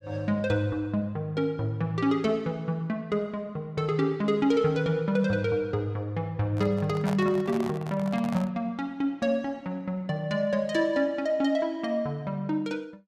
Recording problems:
handling noise; from 6.5 to 8.5 s; peak -2 dB vs average level

